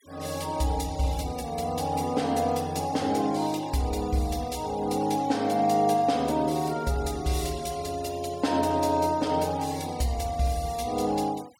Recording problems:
noise reduction artefacts; signal-to-artefact ratio 21 dB

